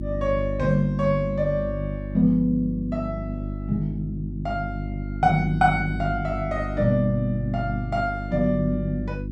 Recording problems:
hum; 50 Hz, harmonics up to 350 Hz, SNR 7 dB

